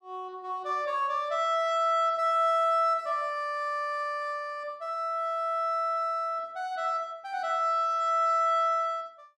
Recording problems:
none

